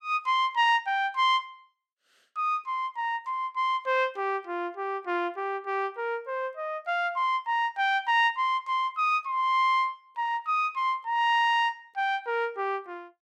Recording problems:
none

